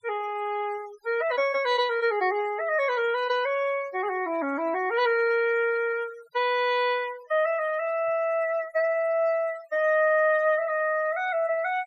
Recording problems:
noise reduction artefacts; signal-to-artefact ratio 23 dB

